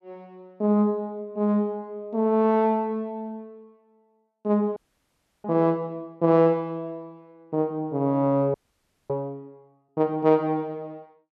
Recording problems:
audio freezing; at 5 s for 0.5 s and at 8.5 s for 0.5 s

